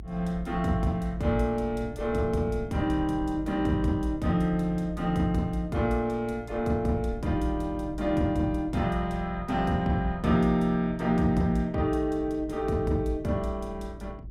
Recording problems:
rumble; below 110 Hz, strongest tone 54 Hz, SNR 13 dB

